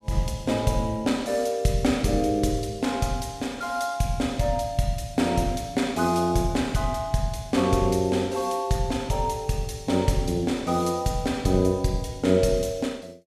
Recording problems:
none

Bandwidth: 14.5 kHz